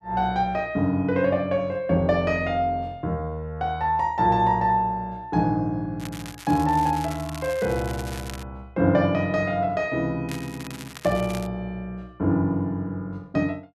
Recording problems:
crackle; from 6 to 8.5 s and from 10 to 11 s; loose cable, SNR 16 dB

